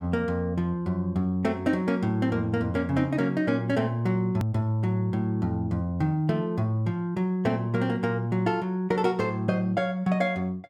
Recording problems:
edit click; at 4.5 s

